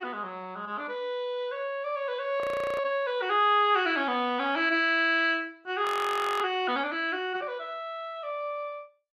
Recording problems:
codec artefacts; Opus, log-spectral distance 2 dB, nothing above 13.1 kHz
audio freezing; at 2.5 s and at 6 s for 0.5 s

